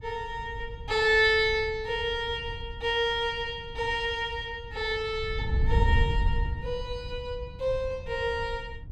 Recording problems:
wind noise; below 86 Hz, SNR 6 dB

